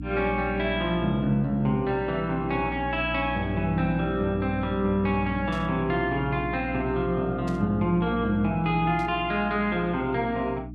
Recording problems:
hum; 60 Hz, harmonics up to 300 Hz, SNR 9 dB
static burst; at 5.5 s, at 7.5 s and at 9 s; peak -14 dB vs average level

